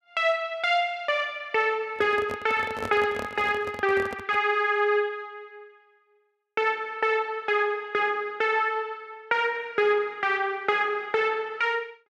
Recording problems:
handling noise; from 2 to 4.5 s; peak -4 dB vs average level

